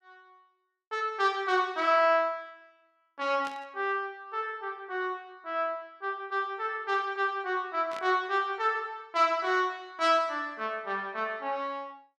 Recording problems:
burst of static; at 3.5 s and at 8 s; peak -10 dB vs average level

